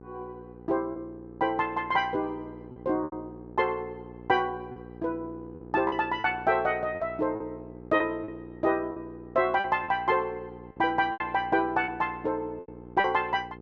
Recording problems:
hum; 60 Hz, harmonics up to 1.3 kHz, SNR 17 dB
lost packets; 7% of the sound replaced, filled with repeated pitch periods

